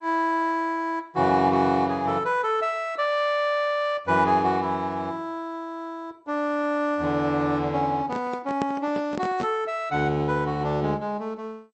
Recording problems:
lossy compression; MP3, then MP2, log-spectral distance 2 dB, nothing above 7.3 kHz
handling noise; from 8 to 9.5 s; peak -1 dB vs average level

